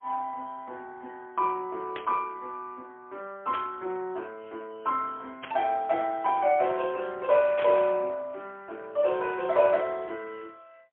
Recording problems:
telephone audio; 280 Hz to 3.5 kHz, AMR-NB, then MP3
burst of static; 4 times, first at 2 s; peak -4 dB vs average level

